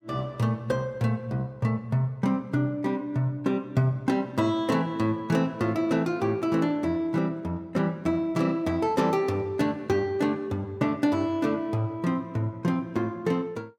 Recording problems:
none

